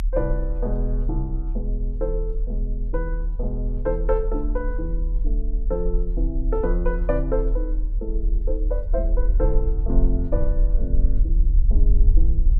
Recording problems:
low-frequency rumble; below 40 Hz, strongest tone 38 Hz, SNR -5 dB

